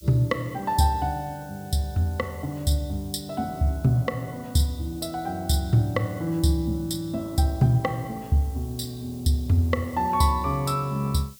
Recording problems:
hiss; SNR 23 dB

